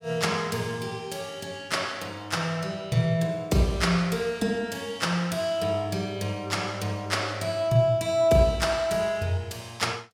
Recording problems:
none

